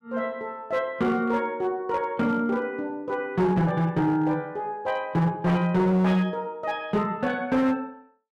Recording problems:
distortion; hard clipping, uneven, signal-to-distortion ratio 11 dB

